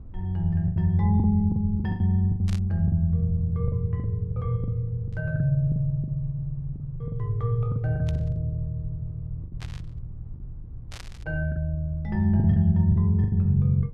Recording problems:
rumble; below 74 Hz, SNR 18 dB
lost packets; 11% of the sound replaced, filled with the last packet
burst of static; 5 times, first at 2.5 s; peak -12 dB vs average level

